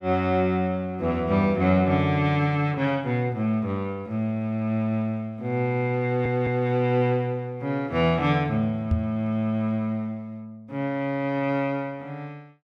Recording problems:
audio stuttering; at 6 s
microphone thump; at 9 s; peak +4 dB vs average level

